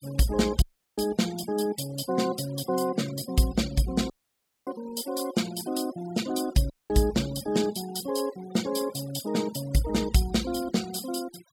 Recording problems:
noise reduction artefacts; signal-to-artefact ratio 17 dB
dropout; at 0.5 s, at 4 s for 0.5 s and at 6.5 s

